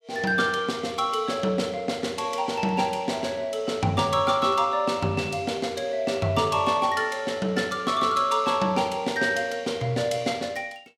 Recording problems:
none

